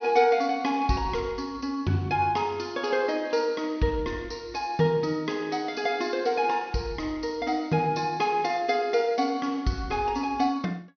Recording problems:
low-pass filter; nothing above 6.1 kHz

